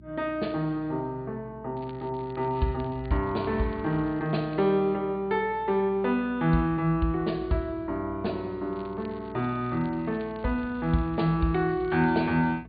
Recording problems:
low-pass filter; nothing above 4.6 kHz
hum; 60 Hz, harmonics up to 360 Hz, SNR 22 dB
crackle; from 2 to 4.5 s, from 8.5 to 11 s and at 12 s; loose cable, SNR 29 dB

